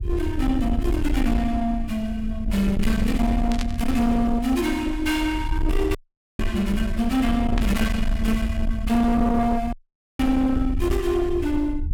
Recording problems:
distorted audio; soft clipping, signal-to-distortion ratio 10 dB
rumble; below 82 Hz, SNR 5 dB
static burst; at 3.5 s, at 6.5 s and at 7.5 s; peak -5 dB vs average level
audio cutting out; at 6 s and at 9.5 s

